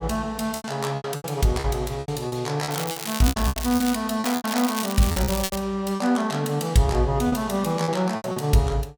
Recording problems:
packet loss; 14% of the sound replaced, filled with repeated pitch periods
crackle; from 2.5 to 4 s and from 4 to 5.5 s; loose cable, SNR 7 dB

